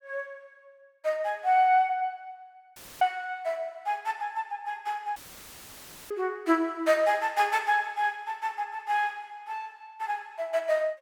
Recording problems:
audio cutting out; at 3 s and at 5 s for 1 s; filled with static

